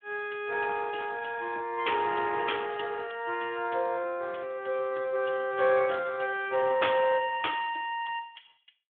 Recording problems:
phone line; 300 Hz to 3.5 kHz, Speex

